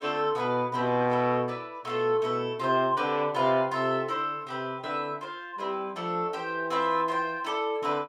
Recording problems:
none

